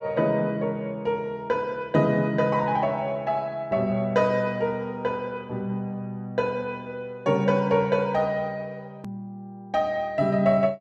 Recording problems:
click at an edit; at 9 s

